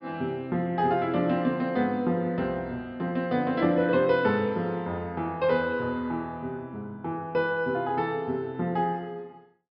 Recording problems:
treble cut off; nothing above 5.5 kHz

